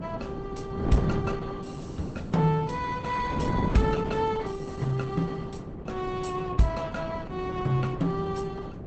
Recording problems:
lossy codec; Opus, log-spectral distance 3 dB, nothing above 8.2 kHz
wind on the microphone; below 340 Hz, SNR 5 dB

